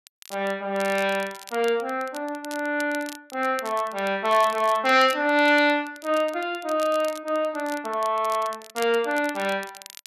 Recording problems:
crackling; vinyl, SNR 19 dB

